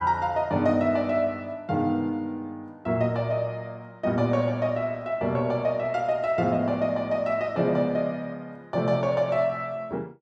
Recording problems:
none

